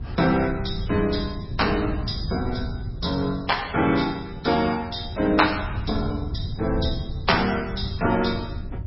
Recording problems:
lossy codec; MP3, log-spectral distance 4 dB, nothing above 5.3 kHz
electrical hum; 60 Hz, harmonics up to 1.4 kHz, SNR 22 dB
wind noise; below 120 Hz, SNR 8 dB

